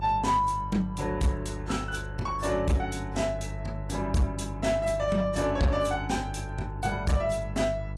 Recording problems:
lossy compression; AAC, log-spectral distance 2 dB, nothing above 11 kHz
distorted audio; hard clipping, uneven, signal-to-distortion ratio 12 dB
mains hum; 50 Hz, harmonics up to 500 Hz, SNR 9 dB

